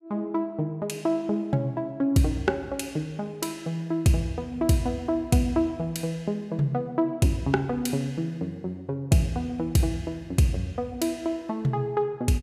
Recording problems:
none

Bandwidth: 15 kHz